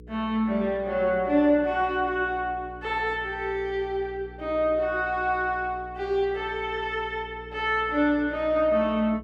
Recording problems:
hum; 60 Hz, harmonics up to 480 Hz, SNR 20 dB

